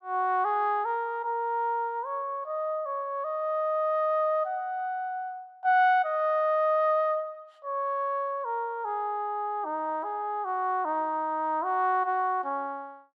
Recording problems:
none

